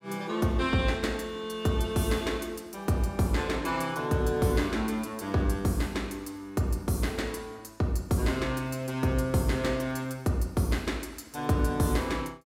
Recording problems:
none

